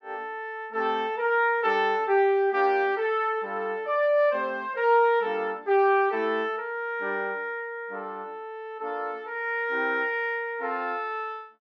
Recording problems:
none

